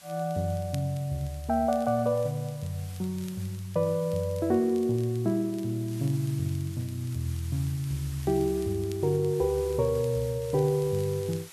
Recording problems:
background hiss; slope +1 dB per octave, SNR 19 dB
crackle; vinyl, SNR 27 dB

